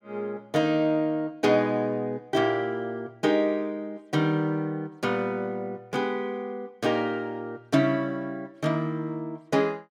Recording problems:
none

